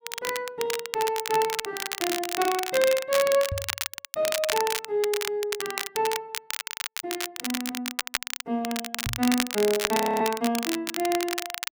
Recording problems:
crackle; vinyl, SNR 3 dB
knock on the microphone; at 3.5 s and at 9 s; peak 0 dB vs average level
frozen audio; at 10 s

